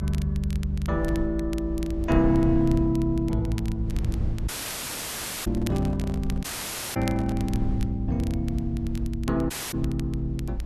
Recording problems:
low-frequency rumble; below 72 Hz, SNR 6 dB
crackling; vinyl, SNR 19 dB
dropout; at 4.5 s for 1 s, at 6.5 s for 0.5 s and at 9.5 s
handling noise; from 5.5 to 7.5 s; peak -12 dB vs average level

